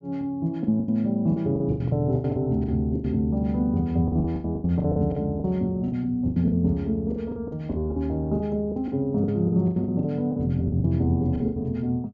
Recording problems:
treble missing; nothing above 7.1 kHz
packet loss; 16% of the sound replaced, filled with the last packet

